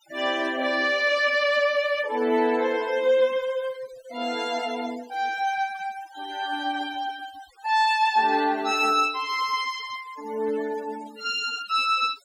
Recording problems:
noise reduction artefacts; signal-to-artefact ratio 20 dB

